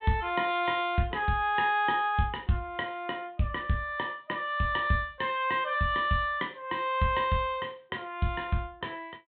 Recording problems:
low-pass filter; nothing above 4 kHz

